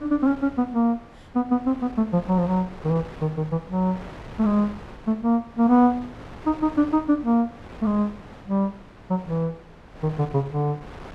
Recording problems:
wind noise; below 1 kHz, SNR 18 dB

